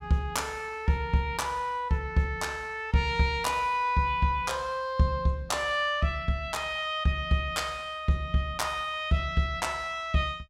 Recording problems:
none

